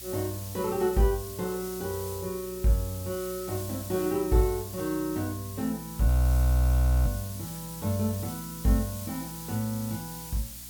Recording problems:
electrical hum; 60 Hz, harmonics up to 300 Hz, SNR 21 dB
background hiss; slope +3 dB per octave, SNR 11 dB
audio freezing; at 6 s for 1 s

